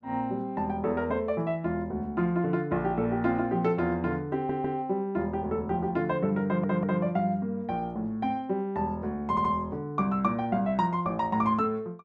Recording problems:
audio stuttering; at 4.5 s, at 6.5 s and at 9.5 s

